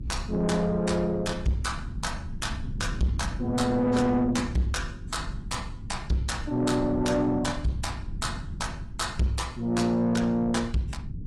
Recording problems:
lossy codec; AAC, log-spectral distance 2 dB, nothing above 11.3 kHz
distorted audio; soft clipping, signal-to-distortion ratio 10 dB
hum; 50 Hz, harmonics up to 400 Hz, SNR 21 dB
rumble; below 150 Hz, SNR 11 dB

